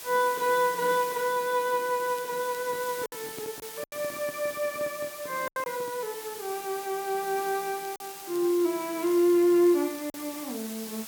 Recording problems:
background hiss; slope +1 dB per octave, SNR 12 dB
lost packets; 3% of the sound replaced, filled with silence
crackling; from 2 to 4 s and from 8 to 10 s; loose cable, SNR 25 dB
microphone handling noise; from 2.5 to 6 s; peak -11 dB vs average level

